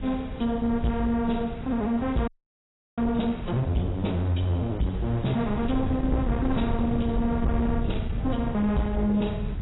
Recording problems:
lossy codec; AAC, log-spectral distance 2 dB, nothing above 3.9 kHz
distortion; soft clipping, signal-to-distortion ratio 12 dB
hiss; SNR 19 dB
wind noise; below 130 Hz, SNR 7 dB
frozen audio; at 2.5 s for 0.5 s

